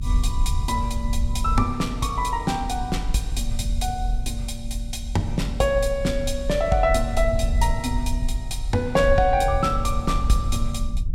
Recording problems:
low-frequency rumble; below 64 Hz, SNR 4 dB

